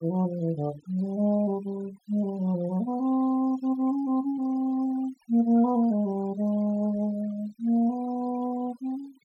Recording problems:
denoising artefacts; signal-to-artefact ratio 23 dB

